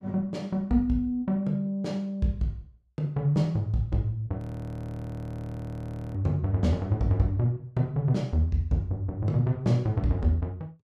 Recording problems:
frozen audio; at 4.5 s for 2 s

